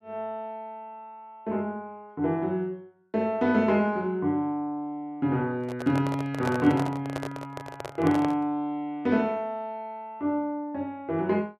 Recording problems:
handling noise; from 5.5 to 8.5 s; peak 0 dB vs average level

